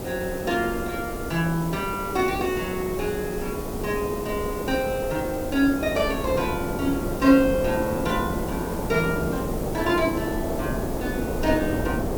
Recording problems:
background hiss; slope 0 dB per octave, SNR 14 dB
wind on the microphone; below 530 Hz, SNR 4 dB

